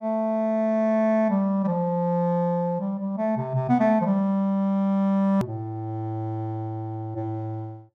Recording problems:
click at an edit; at 5.5 s

